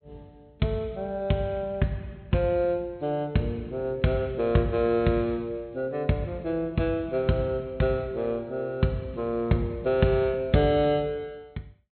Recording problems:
treble cut off; nothing above 4.2 kHz

